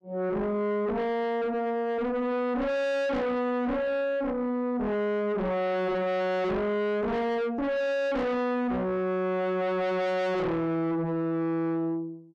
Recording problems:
distorted audio; soft clipping, signal-to-distortion ratio 5 dB

